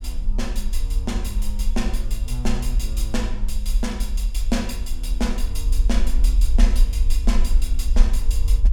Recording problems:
rumble; below 46 Hz, SNR -6 dB

